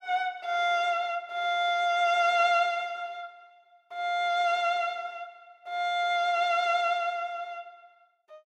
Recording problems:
none

